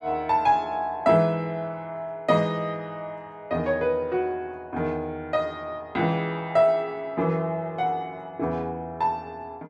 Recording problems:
none

